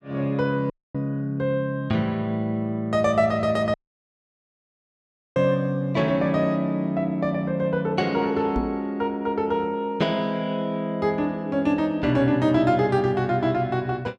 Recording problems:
dropout; at 0.5 s and at 3.5 s for 1.5 s
microphone thump; at 8.5 s; peak 0 dB vs average level

